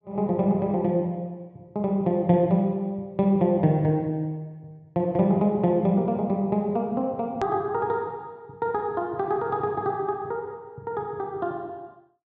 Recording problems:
treble missing; nothing above 8 kHz
click at an edit; at 7.5 s

